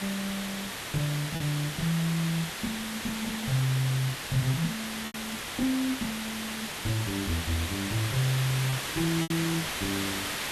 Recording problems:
hiss; SNR 2 dB
lost packets; 2% of the sound replaced, filled with repeated pitch periods
static burst; at 3.5 s and at 5 s; peak -11 dB vs average level

